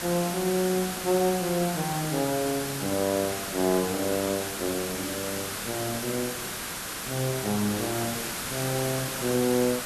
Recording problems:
background hiss; SNR 3 dB

